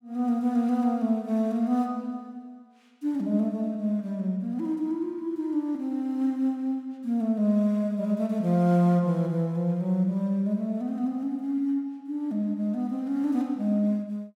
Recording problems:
none

